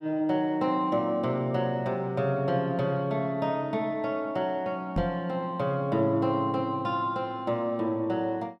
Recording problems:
microphone thump; at 5 s; peak +3 dB vs average level

